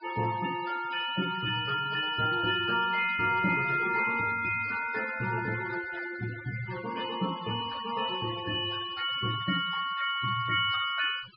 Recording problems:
treble cut off; nothing above 5 kHz
denoising artefacts; signal-to-artefact ratio 14 dB

